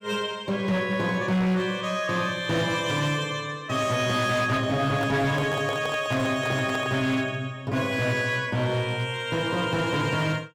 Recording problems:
distortion; hard clipping, signal-to-distortion ratio 11 dB
microphone handling noise; from 5 to 7 s; peak -4 dB vs average level

